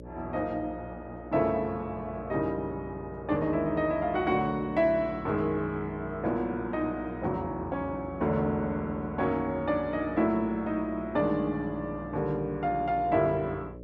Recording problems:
hum; 60 Hz, harmonics up to 600 Hz, SNR 15 dB

